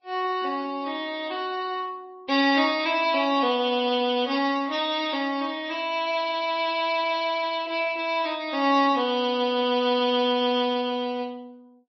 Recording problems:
lossy compression; MP3, then Vorbis, log-spectral distance 2 dB, nothing above 4.9 kHz

